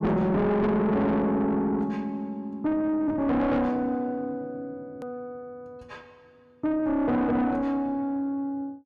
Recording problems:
distortion; soft clipping, signal-to-distortion ratio 7 dB
edit click; at 5 s

